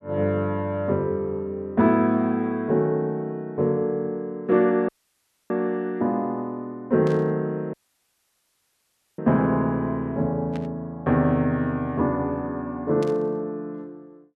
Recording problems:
audio cutting out; at 5 s for 0.5 s and at 7.5 s for 1.5 s
burst of static; at 7 s, at 11 s and at 13 s; peak -12 dB vs average level

